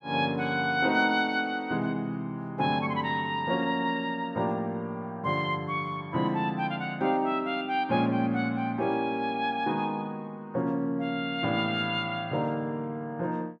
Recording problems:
none

